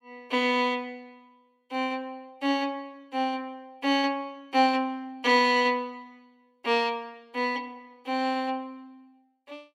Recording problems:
none

